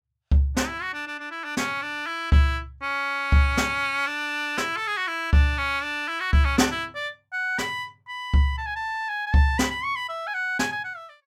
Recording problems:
none

